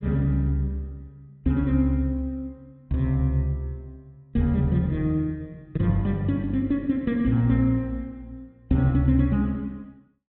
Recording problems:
low-pass filter; nothing above 4 kHz

